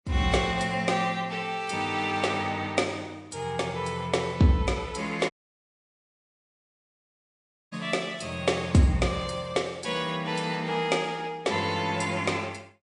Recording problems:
lossy compression; MP3, log-spectral distance 3 dB, nothing above 8.2 kHz
audio cutting out; at 5.5 s for 2.5 s

